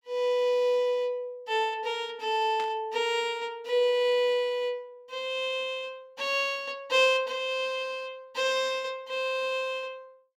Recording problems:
static burst; at 2.5 s; peak -9 dB vs average level

